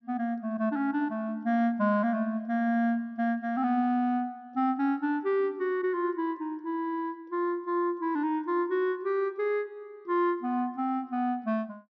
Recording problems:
treble missing; nothing above 5.9 kHz

